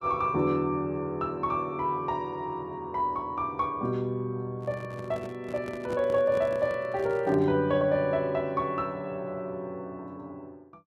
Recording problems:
handling noise; from 4.5 to 7.5 s; peak -5 dB vs average level

